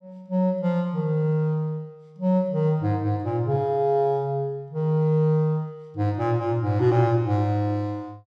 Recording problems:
none

